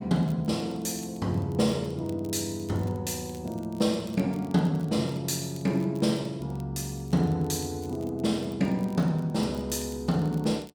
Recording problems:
crackling; vinyl, SNR 26 dB

